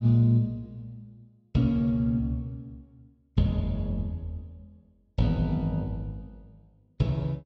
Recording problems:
none

